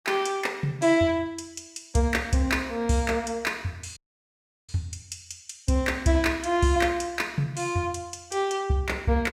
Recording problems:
dropout; at 4 s for 0.5 s

